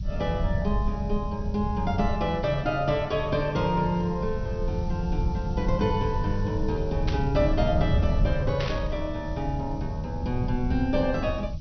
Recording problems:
treble cut off; nothing above 6 kHz
hiss; SNR 27 dB
rumble; below 110 Hz, SNR 3 dB
static burst; at 7 s and at 8.5 s; peak -2 dB vs average level

